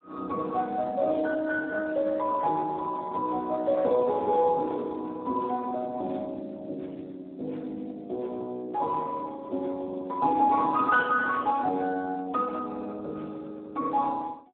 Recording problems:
telephone audio; 220 Hz to 2.2 kHz, Speex

